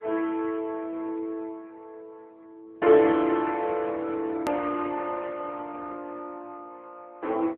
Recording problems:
telephone audio; 260 Hz to 3.6 kHz, AMR-NB
click at an edit; at 4.5 s

